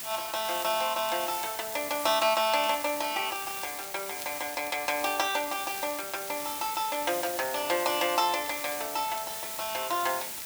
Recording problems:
background hiss; slope 0 dB per octave, SNR 6 dB
crackling; vinyl, SNR 19 dB

